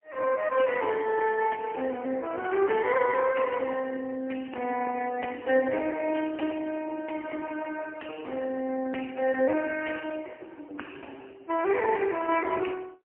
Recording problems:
phone line; 220 Hz to 2.9 kHz, AMR-NB, then MP3

